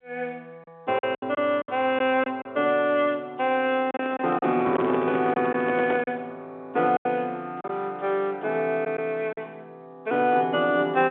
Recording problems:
phone line; 220 Hz to 3.5 kHz, G.711
packet loss; 6% of the sound replaced, filled with silence
microphone handling noise; from 4 to 6 s; peak -1 dB vs average level

